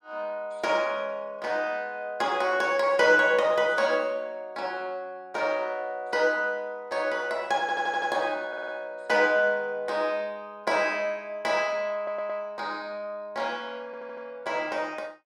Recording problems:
stutter; 4 times, first at 7.5 s

